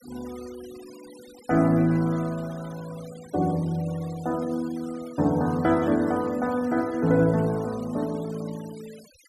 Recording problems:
denoising artefacts; signal-to-artefact ratio 23 dB

